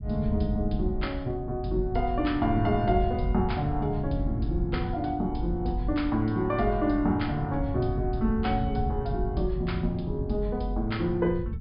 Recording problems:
treble cut off; nothing above 5.1 kHz
rumble; below 120 Hz, SNR 6 dB

